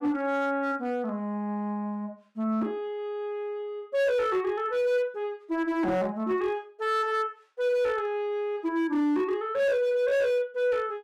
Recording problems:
distorted audio; hard clipping, signal-to-distortion ratio 11 dB

